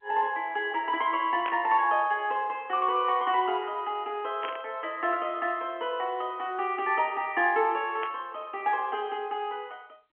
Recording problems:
telephone audio; 280 Hz to 3.3 kHz, G.711
static burst; at 1.5 s, at 4.5 s and at 8 s; peak -5 dB vs average level

